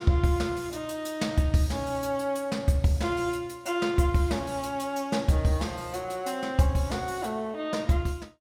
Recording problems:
none

